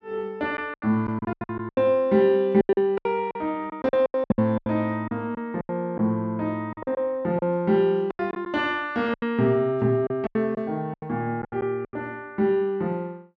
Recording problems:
packet loss; 14% of the sound replaced, filled with silence

